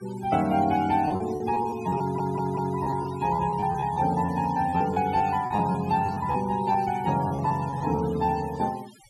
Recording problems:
denoising artefacts; signal-to-artefact ratio 18 dB
packet loss; 9% of the sound replaced, filled with repeated pitch periods
stutter; at 2 s

